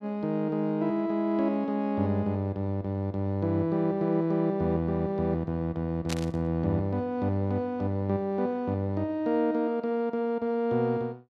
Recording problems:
static burst; at 6 s; peak -2 dB vs average level

